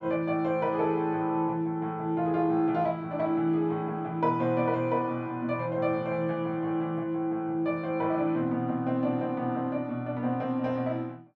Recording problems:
none

